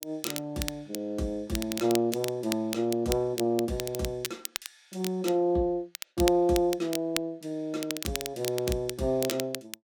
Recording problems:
crackle; vinyl, SNR 8 dB

